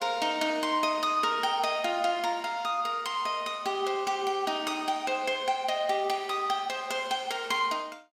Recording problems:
none

